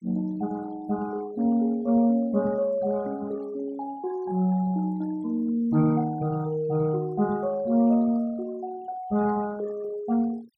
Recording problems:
noise reduction artefacts; signal-to-artefact ratio 24 dB

